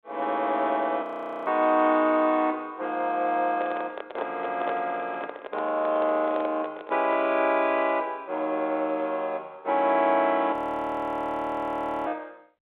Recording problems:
telephone audio; 260 Hz to 4 kHz, G.726
frozen audio; at 1 s and at 11 s for 1.5 s
microphone handling noise; from 3.5 to 7.5 s; peak -2 dB vs average level

